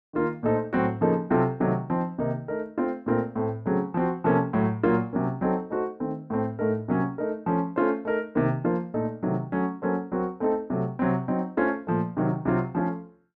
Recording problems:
none

